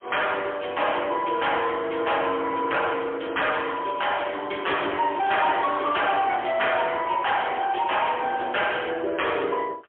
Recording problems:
telephone audio; 260 Hz to 3.3 kHz, AMR-NB, then MP3
distortion; soft clipping, signal-to-distortion ratio 10 dB
crackle; from 3.5 to 6 s and at 6.5 s; loose cable, SNR 22 dB

